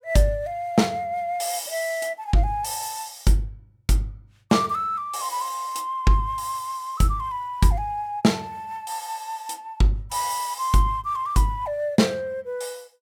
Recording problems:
none

